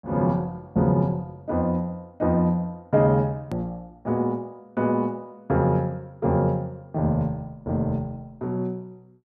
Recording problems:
hard cut with a click; at 3.5 s

